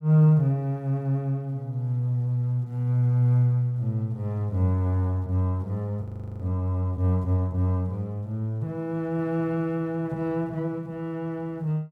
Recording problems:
audio freezing; at 6 s

